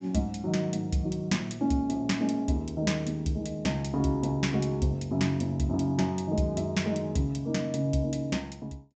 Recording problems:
treble missing; nothing above 8 kHz

